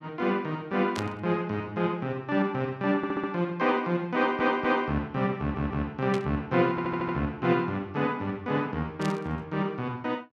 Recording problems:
static burst; at 1 s, at 6 s and at 9 s; peak -4 dB vs average level
audio stuttering; 4 times, first at 3 s

